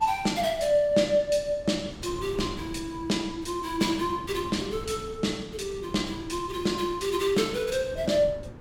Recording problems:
wind noise; below 290 Hz, SNR 16 dB

